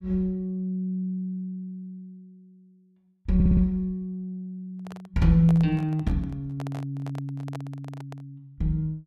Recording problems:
stutter; at 3.5 s
handling noise; from 5 to 8.5 s; peak -7 dB vs average level

